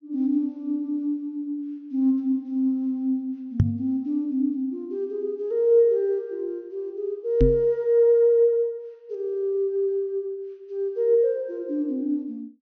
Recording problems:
low-pass filter; nothing above 6.5 kHz
knock on the microphone; at 3.5 s and at 7.5 s; peak +8 dB vs average level

